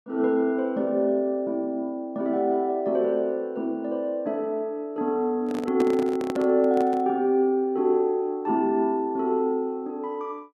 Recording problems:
microphone handling noise; from 5.5 to 7 s; peak -2 dB vs average level

